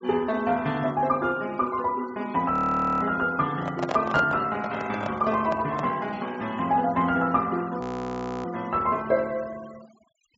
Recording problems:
treble missing; nothing above 8 kHz
denoising artefacts; signal-to-artefact ratio 21 dB
audio freezing; at 2.5 s and at 8 s for 0.5 s
microphone handling noise; from 3.5 to 6 s; peak 0 dB vs average level

